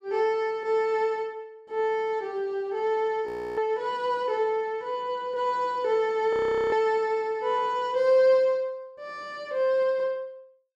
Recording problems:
frozen audio; at 3.5 s and at 6.5 s

